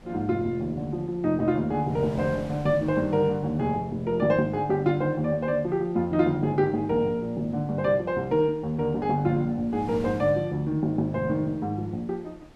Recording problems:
wind on the microphone; below 740 Hz, SNR 22 dB

